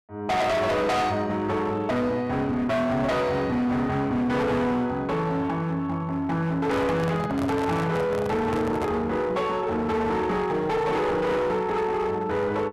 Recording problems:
distortion; hard clipping, uneven, signal-to-distortion ratio 7 dB
microphone handling noise; from 6.5 to 9 s; peak -1 dB vs average level

